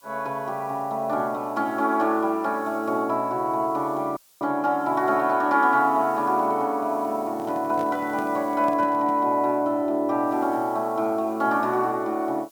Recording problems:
hiss; slope +1 dB per octave, SNR 28 dB
audio cutting out; at 4 s
microphone handling noise; from 7.5 to 9.5 s; peak -10 dB vs average level

